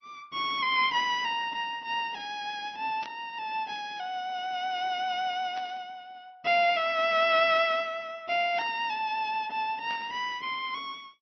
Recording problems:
codec artefacts; MP3, then MP2, log-spectral distance 3 dB, nothing above 5.5 kHz
static burst; 4 times, first at 3 s; peak -10 dB vs average level

